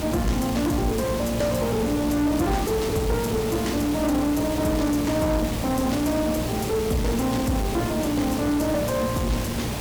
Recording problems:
distorted audio; soft clipping, signal-to-distortion ratio 12 dB
hum; 60 Hz, harmonics up to 480 Hz, SNR 11 dB
background hiss; slope -4 dB per octave, SNR 6 dB
crackle; vinyl, SNR 30 dB

